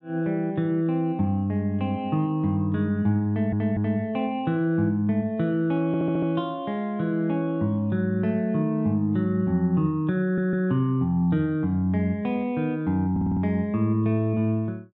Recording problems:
stutter; 4 times, first at 3.5 s

